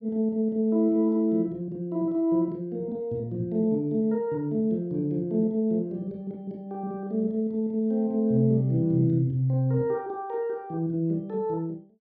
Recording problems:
none

